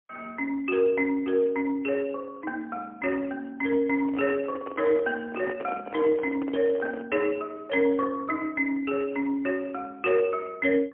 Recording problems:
telephone audio; 240 Hz to 3.1 kHz, AMR-NB, then MP3
handling noise; from 4 to 7 s; peak -6 dB vs average level

